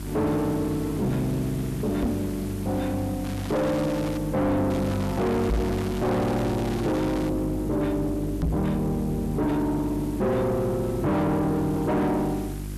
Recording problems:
distortion; soft clipping, signal-to-distortion ratio 6 dB
hum; 50 Hz, harmonics up to 450 Hz, SNR 9 dB
hiss; slope -6 dB per octave, SNR 16 dB
knock on the microphone; at 2 s, at 5.5 s and at 8.5 s; peak +5 dB vs average level
crackle; at 3 s and from 4.5 to 7.5 s; loose cable, SNR 15 dB

